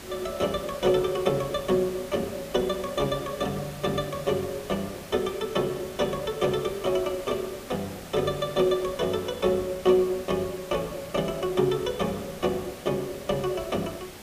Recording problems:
background hiss; slope -3 dB per octave, SNR 14 dB

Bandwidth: 15 kHz